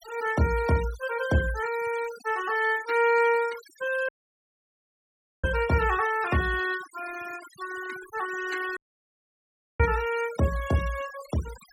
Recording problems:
denoising artefacts; signal-to-artefact ratio 16 dB
dropout; at 4 s for 1.5 s and at 9 s for 1 s

